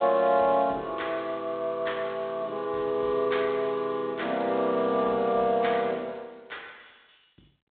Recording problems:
telephone audio; 150 Hz to 3.9 kHz, G.726

